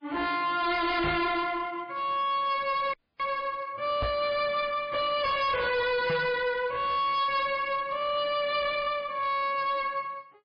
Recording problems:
lossy codec; MP3, log-spectral distance 3 dB, nothing above 4.1 kHz
distorted audio; hard clipping, uneven, signal-to-distortion ratio 6 dB
microphone thump; at 1 s, at 4 s and at 6 s; peak +2 dB vs average level
audio freezing; at 3 s

